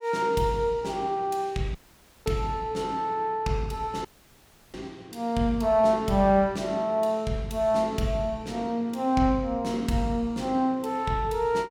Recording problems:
audio cutting out; at 2 s for 0.5 s and at 4 s for 0.5 s

